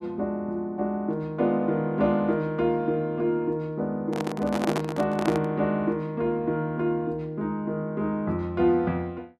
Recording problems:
handling noise; from 4 to 5.5 s; peak +2 dB vs average level

